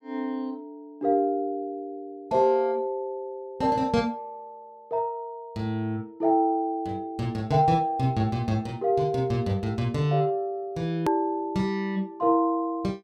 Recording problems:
click at an edit; at 11 s

